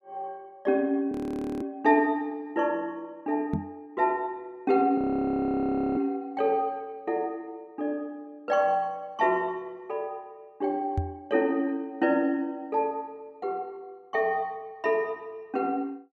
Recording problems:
frozen audio; at 1 s and at 5 s for 1 s
microphone bump; at 3.5 s and at 11 s; peak +3 dB vs average level

